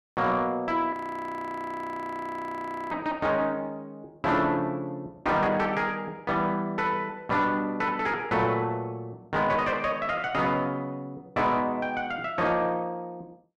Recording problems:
distortion; soft clipping, signal-to-distortion ratio 11 dB
audio freezing; at 1 s for 2 s

